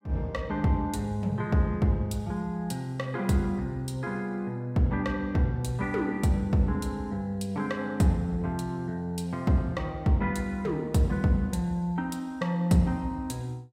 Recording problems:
none

